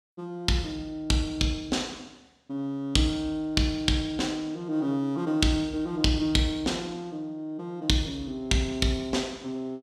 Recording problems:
none

